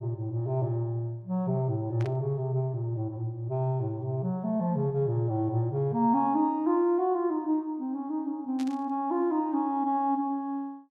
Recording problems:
static burst; at 2 s and at 8.5 s; peak -11 dB vs average level

